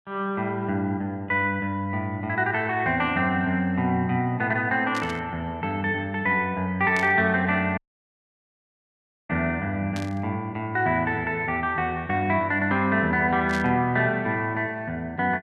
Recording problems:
burst of static; 4 times, first at 5 s; peak -7 dB vs average level
dropout; at 8 s for 1.5 s

